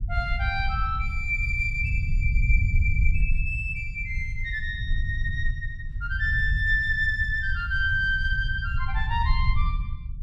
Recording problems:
low-frequency rumble; below 78 Hz, SNR 2 dB

